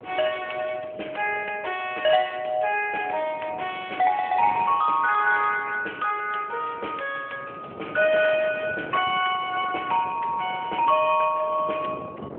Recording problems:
phone line; 320 Hz to 3.3 kHz, AMR-NB
wind noise; below 640 Hz, SNR 18 dB

